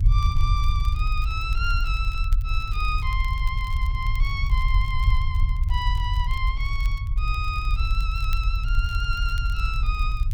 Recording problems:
low-frequency rumble; below 66 Hz, SNR -5 dB
crackle; vinyl, SNR 21 dB

